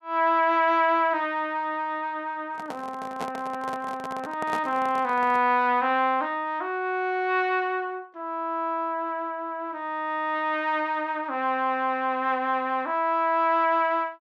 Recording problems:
microphone handling noise; from 2.5 to 5.5 s; peak -4 dB vs average level

